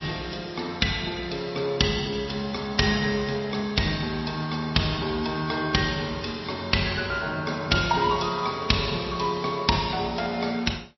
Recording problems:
codec artefacts; MP3, log-spectral distance 6 dB, nothing above 5.7 kHz

